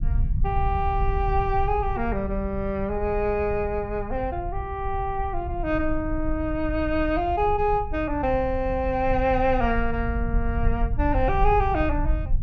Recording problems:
treble cut off; nothing above 6.6 kHz
low-frequency rumble; below 72 Hz, SNR 5 dB

